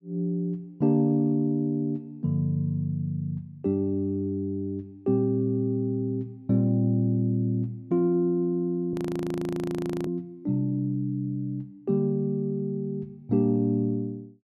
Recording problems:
audio freezing; at 9 s for 1 s

